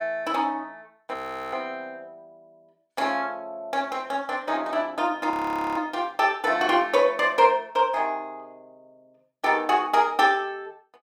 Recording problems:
audio freezing; at 1 s and at 5.5 s

